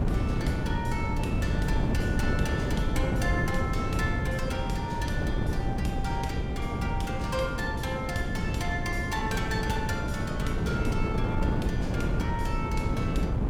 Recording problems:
electrical hum; 60 Hz, harmonics up to 540 Hz, SNR 8 dB
wind noise; below 230 Hz, SNR -3 dB

